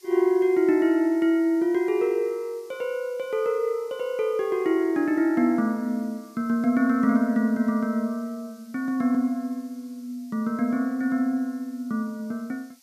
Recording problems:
hiss; SNR 30 dB

